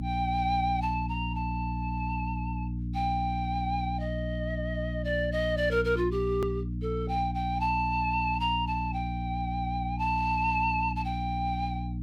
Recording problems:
hum; 60 Hz, harmonics up to 300 Hz, SNR 3 dB
click at an edit; at 6.5 s

